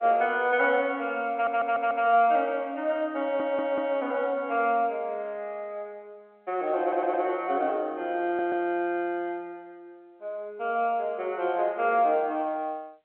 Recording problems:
telephone audio; 220 Hz to 3.3 kHz, G.711
stutter; 4 times, first at 1.5 s

